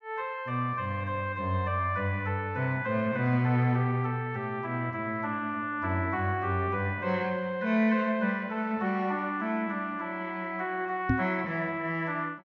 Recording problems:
treble missing; nothing above 6.6 kHz
microphone bump; at 11 s; peak +6 dB vs average level

